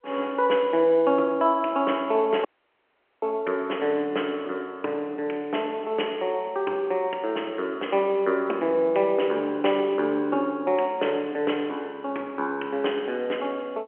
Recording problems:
phone line; 280 Hz to 3.1 kHz, G.711
audio cutting out; at 2.5 s for 1 s

